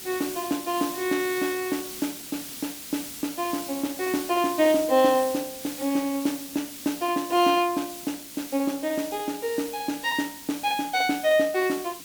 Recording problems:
background hiss; SNR 11 dB

